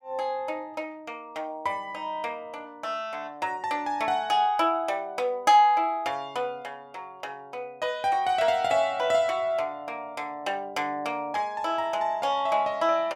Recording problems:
none

